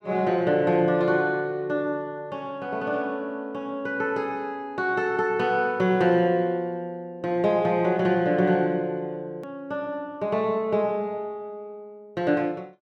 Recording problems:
hard cut with a click; at 9.5 s

